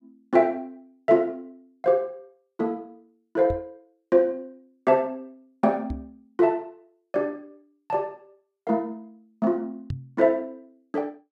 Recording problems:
knock on the microphone; at 3.5 s, at 6 s and at 10 s; peak -2 dB vs average level

